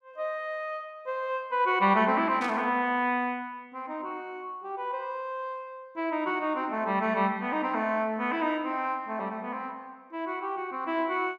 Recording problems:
burst of static; at 2.5 s; peak -9 dB vs average level

